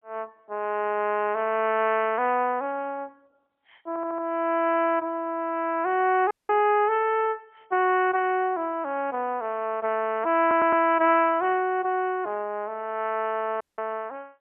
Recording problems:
phone line; 280 Hz to 3.3 kHz, AMR-NB, then MP3
audio stuttering; at 4 s and at 10 s
dropout; at 6.5 s and at 14 s

